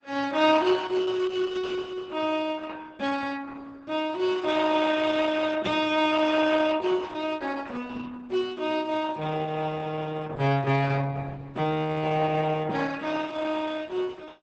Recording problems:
codec artefacts; Opus, log-spectral distance 4 dB, nothing above 8 kHz

